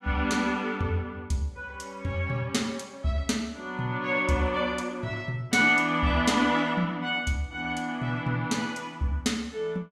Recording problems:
none

